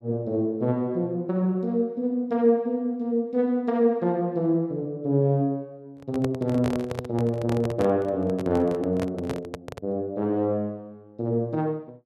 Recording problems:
microphone handling noise; from 6 to 10 s; peak -1 dB vs average level

